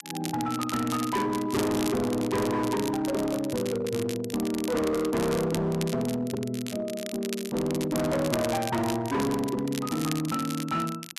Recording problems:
distorted audio; hard clipping, signal-to-distortion ratio 8 dB
crackle; vinyl, SNR 11 dB

